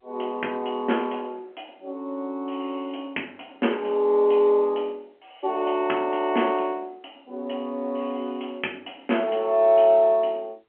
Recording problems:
telephone audio; 240 Hz to 3.2 kHz, G.711

